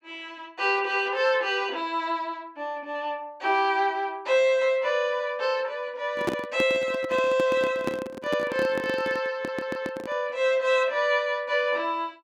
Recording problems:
microphone handling noise; from 6 to 10 s; peak +3 dB vs average level
stutter; at 9.5 s

